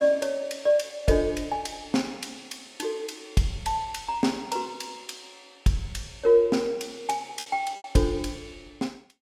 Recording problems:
lost packets; 1.9% of the sound replaced, filled with repeated pitch periods

